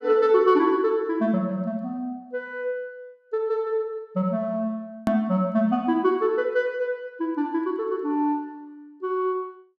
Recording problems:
click at an edit; at 5 s

